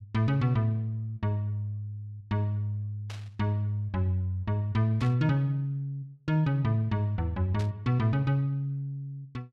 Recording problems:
burst of static; at 3 s, at 5 s and at 7.5 s; peak -10 dB vs average level

